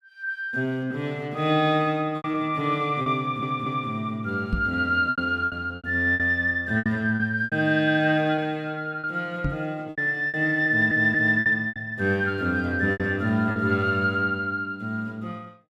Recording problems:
lost packets; 8% of the sound replaced, filled with repeated pitch periods
audio stuttering; at 3 s and at 11 s
microphone thump; at 4.5 s and at 9.5 s; peak +1 dB vs average level

